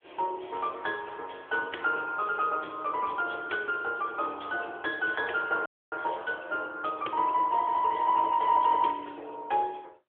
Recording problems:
phone line; 300 Hz to 3.5 kHz, AMR-NB
frozen audio; at 5.5 s

